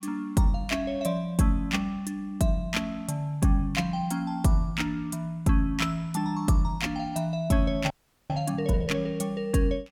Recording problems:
frozen audio; at 8 s

